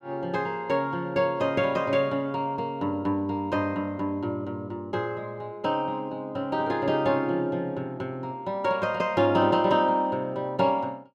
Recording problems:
none

